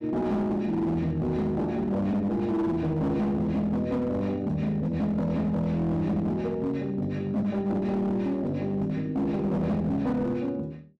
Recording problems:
distortion; hard clipping, signal-to-distortion ratio 11 dB

